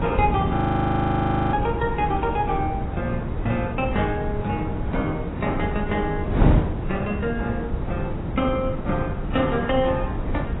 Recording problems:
lossy compression; AAC, log-spectral distance 2 dB, nothing above 3.2 kHz
wind noise; below 290 Hz, SNR 1 dB
audio freezing; at 0.5 s for 1 s

